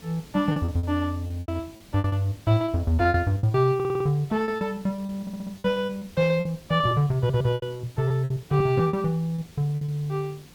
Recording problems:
background hiss; SNR 23 dB
packet loss; 15% of the sound replaced, filled with repeated pitch periods
audio stuttering; at 4 s, at 5 s and at 7 s

